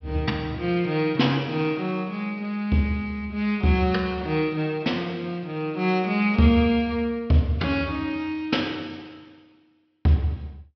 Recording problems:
treble cut off; nothing above 5.5 kHz

